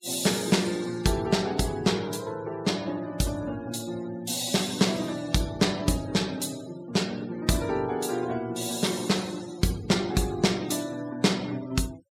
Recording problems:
denoising artefacts; signal-to-artefact ratio 19 dB

